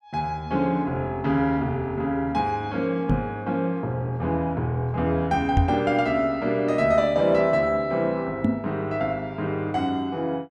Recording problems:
knock on the microphone; at 3 s, at 5.5 s and at 8.5 s; peak +6 dB vs average level

